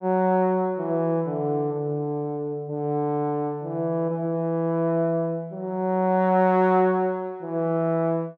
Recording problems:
none

